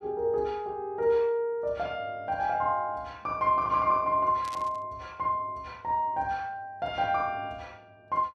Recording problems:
static burst; at 4.5 s; peak -9 dB vs average level

